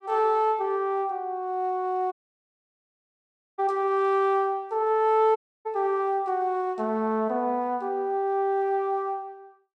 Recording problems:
dropout; at 2 s for 1.5 s and at 5.5 s

